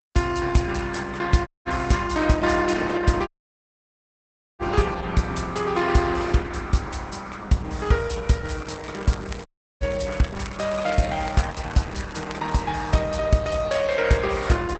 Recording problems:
lossy codec; Opus, log-spectral distance 6 dB, nothing above 8 kHz
audio cutting out; at 1.5 s, at 3.5 s for 1.5 s and at 9.5 s
crackle; from 8.5 to 13 s; loose cable, SNR 19 dB

